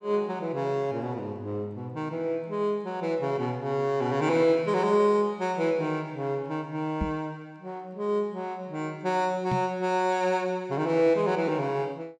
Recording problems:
knock on the microphone; at 7 s and at 9.5 s; peak +1 dB vs average level

